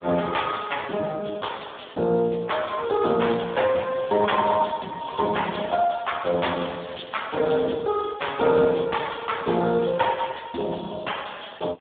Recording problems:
phone line; 220 Hz to 3.6 kHz, Speex

